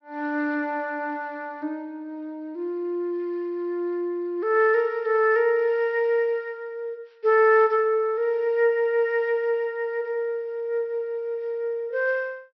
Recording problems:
treble missing; nothing above 5.8 kHz

